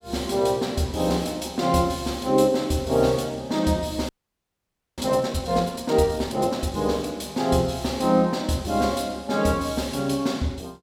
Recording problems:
audio freezing; at 4 s for 1 s

